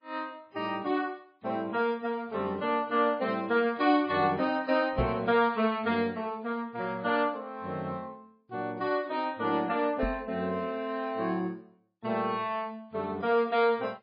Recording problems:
codec artefacts; MP3, log-spectral distance 2 dB, nothing above 4.1 kHz
microphone bump; at 5 s and at 10 s; peak +2 dB vs average level

